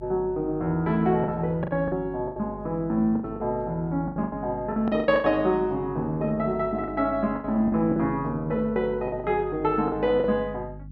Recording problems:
hum; 50 Hz, harmonics up to 300 Hz, SNR 17 dB
lost packets; 10% of the sound replaced, filled with the last packet

